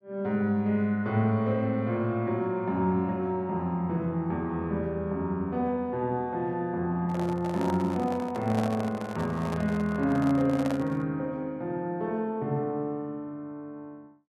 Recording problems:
microphone handling noise; from 7 to 11 s; peak -3 dB vs average level

